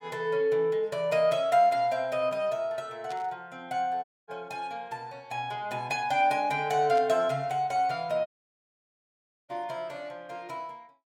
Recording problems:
burst of static; at 3 s and at 7 s; peak -12 dB vs average level
dropout; at 4 s and at 8.5 s for 1 s

